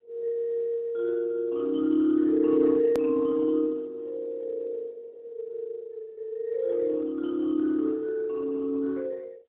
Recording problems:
telephone audio; 320 Hz to 3.1 kHz, AMR-NB, then MP3
hard cut with a click; at 3 s

